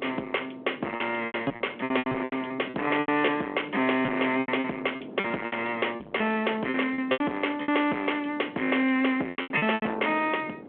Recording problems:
telephone audio; 220 Hz to 3.3 kHz, G.726
distortion; soft clipping, signal-to-distortion ratio 10 dB
wind on the microphone; below 630 Hz, SNR 18 dB
packet loss; 14% of the sound replaced, filled with repeated pitch periods

